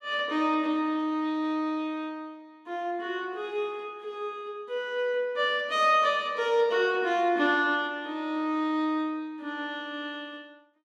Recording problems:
none

